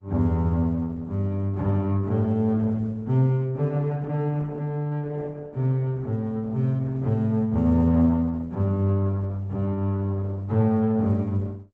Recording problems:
lossy codec; Opus, log-spectral distance 2 dB

